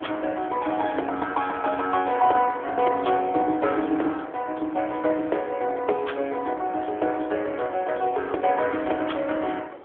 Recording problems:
phone line; 280 Hz to 3.4 kHz, AMR-NB
wind on the microphone; below 690 Hz, SNR 20 dB

